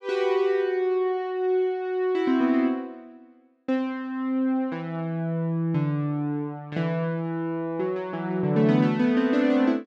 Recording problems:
none

